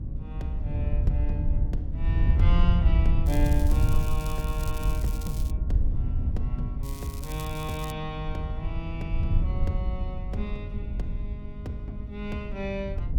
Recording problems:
hum; 50 Hz, harmonics up to 300 Hz, SNR 8 dB
wind on the microphone; below 80 Hz, SNR -7 dB
crackle; from 3.5 to 5.5 s and from 7 to 8 s; loose cable, SNR 9 dB

